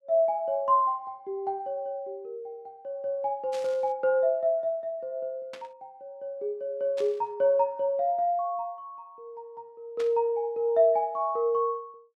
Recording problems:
static burst; 4 times, first at 3.5 s; peak -10 dB vs average level

